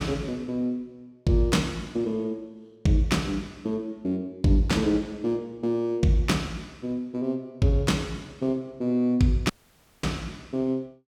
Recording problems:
dropout; at 9.5 s for 0.5 s

